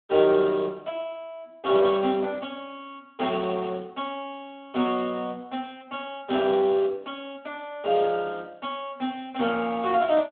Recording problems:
phone line; 220 Hz to 3.4 kHz, Speex

